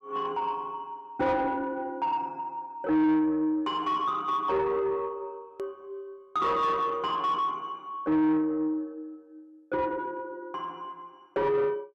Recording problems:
distorted audio; soft clipping, signal-to-distortion ratio 8 dB
click at an edit; at 5.5 s

